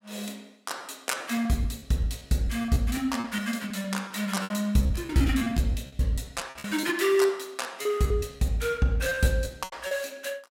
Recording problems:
packet loss; 14% of the sound replaced, filled with repeated pitch periods

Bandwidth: 16.5 kHz